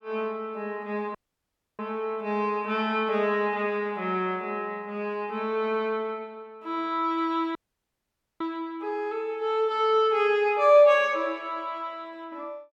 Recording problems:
audio cutting out; at 1 s for 0.5 s and at 7.5 s for 1 s

